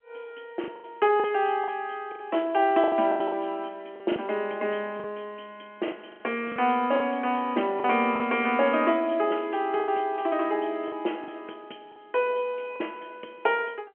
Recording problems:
telephone audio; 260 Hz to 3.2 kHz, G.711
lost packets; 8% of the sound replaced, filled with the last packet

